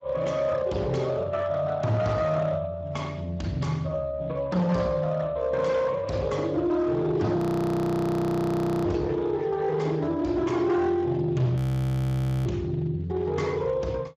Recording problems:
lossy codec; Speex, log-spectral distance 3 dB, nothing above 15.1 kHz
distorted audio; hard clipping, signal-to-distortion ratio 11 dB
frozen audio; at 7.5 s for 1.5 s and at 12 s for 1 s

